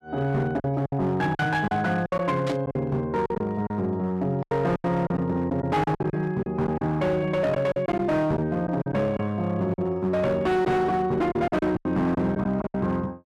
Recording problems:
distorted audio; hard clipping, signal-to-distortion ratio 11 dB
packet loss; 10% of the sound replaced, filled with silence
static burst; at 2.5 s; peak -8 dB vs average level

